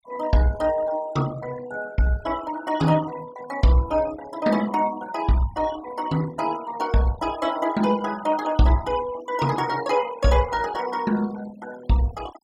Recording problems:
denoising artefacts; signal-to-artefact ratio 17 dB

